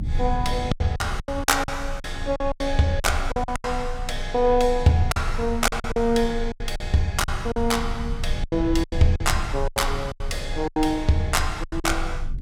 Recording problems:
rumble; below 56 Hz, strongest tone 24 Hz, SNR 8 dB
lost packets; 13% of the sound replaced, filled with silence

